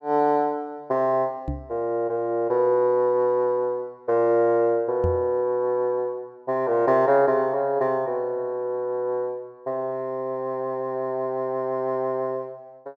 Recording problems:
knock on the microphone; at 1.5 s and at 5 s; peak 0 dB vs average level

